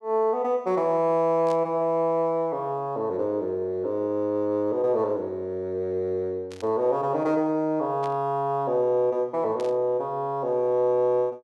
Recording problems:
burst of static; 4 times, first at 1.5 s; peak -15 dB vs average level

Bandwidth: 12 kHz